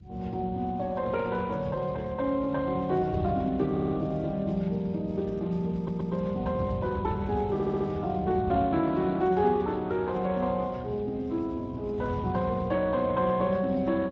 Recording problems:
lossy codec; Speex, log-spectral distance 3 dB
wind on the microphone; below 140 Hz, SNR 12 dB
audio stuttering; at 3.5 s, at 6 s and at 7.5 s

